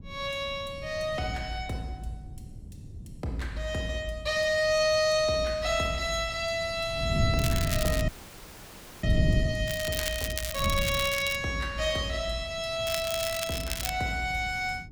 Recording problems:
wind on the microphone; below 160 Hz, SNR 7 dB
crackle; at 7.5 s, from 9.5 to 11 s and from 13 to 14 s; loose cable, SNR 5 dB
frozen audio; at 8 s for 1 s

